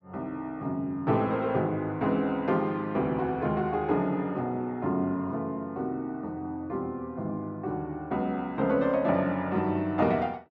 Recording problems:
none

